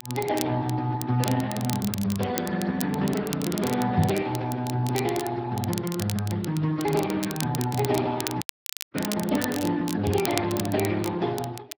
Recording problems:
lossy compression; Vorbis, then Speex, log-spectral distance 4 dB
crackle; vinyl, SNR 10 dB
knock on the microphone; at 4 s and at 10 s; peak +4 dB vs average level
dropout; at 8.5 s for 0.5 s

